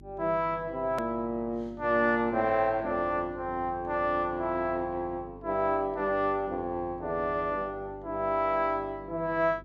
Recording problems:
mains hum; 50 Hz, harmonics up to 400 Hz, SNR 21 dB
click at an edit; at 1 s

